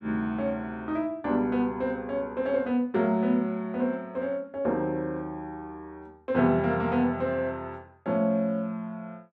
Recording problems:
none

